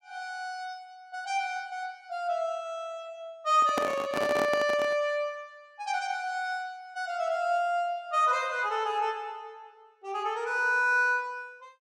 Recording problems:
handling noise; from 3.5 to 5 s; peak +3 dB vs average level

